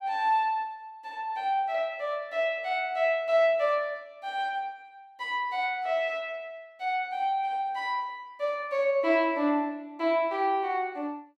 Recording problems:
none

